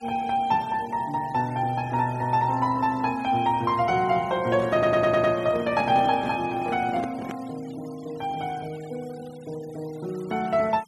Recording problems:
denoising artefacts; signal-to-artefact ratio 23 dB
handling noise; from 4.5 to 7.5 s; peak -4 dB vs average level
stutter; at 4.5 s

